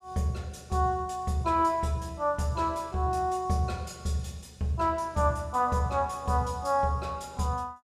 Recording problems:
none

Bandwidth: 14.5 kHz